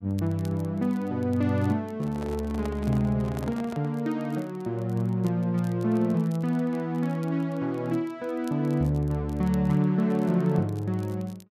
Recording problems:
crackling; vinyl, SNR 29 dB
microphone handling noise; from 2 to 4 s; peak -8 dB vs average level

